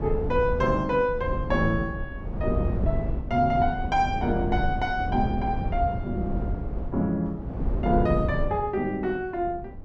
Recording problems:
wind on the microphone; below 170 Hz, SNR 4 dB

